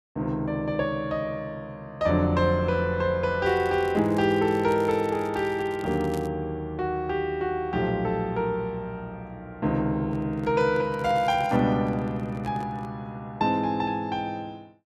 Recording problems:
crackle; from 3.5 to 6.5 s and at 11 s; loose cable, SNR 25 dB
microphone handling noise; from 10 to 13 s; peak -9 dB vs average level

